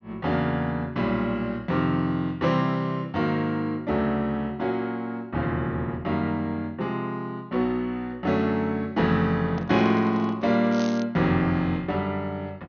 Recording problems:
treble cut off; nothing above 6.4 kHz
handling noise; from 9.5 to 11 s; peak -7 dB vs average level
crackle; at 11 s; loose cable, SNR 17 dB

